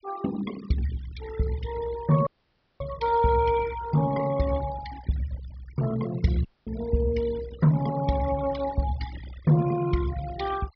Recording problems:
treble cut off; nothing above 5.5 kHz
denoising artefacts; signal-to-artefact ratio 15 dB
audio cutting out; at 2.5 s for 0.5 s and at 6.5 s

